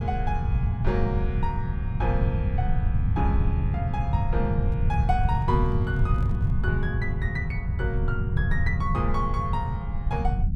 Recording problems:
rumble; below 130 Hz, SNR -5 dB
microphone handling noise; from 4.5 to 6.5 s; peak -12 dB vs average level

